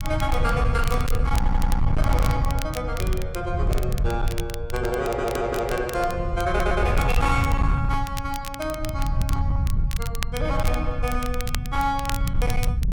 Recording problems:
distortion; hard clipping, signal-to-distortion ratio 12 dB
rumble; below 100 Hz, SNR 0 dB
crackle; vinyl, SNR 11 dB
audio stuttering; at 1.5 s, at 5 s and at 6.5 s

